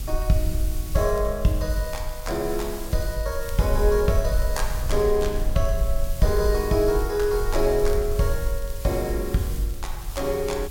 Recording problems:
background hiss; slope +2 dB per octave, SNR 15 dB
low-frequency rumble; below 50 Hz, strongest tone 18 Hz, SNR 7 dB
crackling; vinyl, SNR 29 dB

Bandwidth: 16.5 kHz